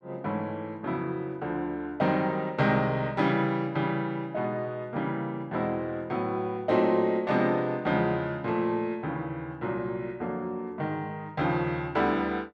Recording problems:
none

